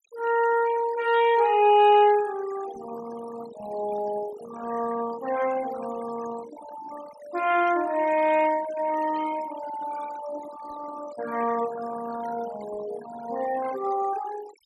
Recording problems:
noise reduction artefacts; signal-to-artefact ratio 14 dB

